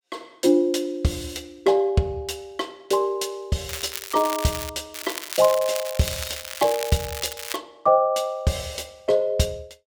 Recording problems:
crackle; from 3.5 to 4.5 s and from 5 to 7.5 s; loose cable, SNR 8 dB

